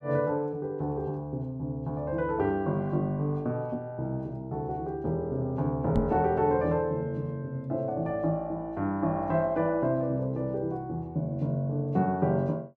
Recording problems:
knock on the microphone; at 6 s; peak +6 dB vs average level

